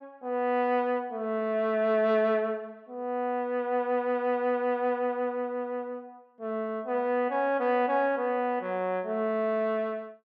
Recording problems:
none

